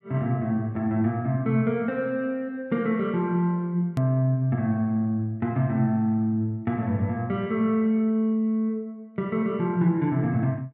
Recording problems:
click at an edit; at 4 s

